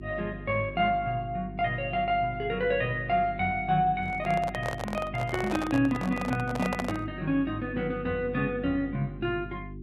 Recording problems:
electrical hum; 50 Hz, harmonics up to 400 Hz, SNR 13 dB
microphone handling noise; from 4 to 7 s; peak +1 dB vs average level

